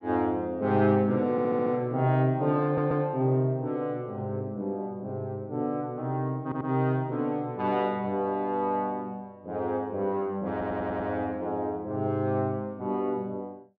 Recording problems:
stutter; 4 times, first at 1.5 s

